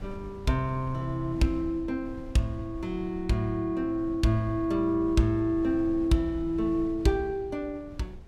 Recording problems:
wind noise; below 120 Hz, SNR 16 dB

